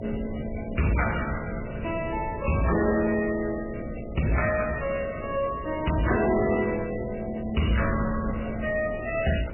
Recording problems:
codec artefacts; AAC, then MP3, log-spectral distance 10 dB, nothing above 2.9 kHz
distortion; soft clipping, signal-to-distortion ratio 10 dB
electrical hum; 60 Hz, harmonics up to 780 Hz, SNR 13 dB
wind on the microphone; below 190 Hz, SNR 11 dB

